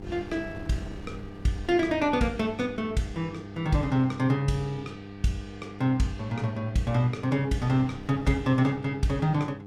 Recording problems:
hum; 50 Hz, harmonics up to 1.2 kHz, SNR 15 dB
wind noise; below 250 Hz, SNR 20 dB

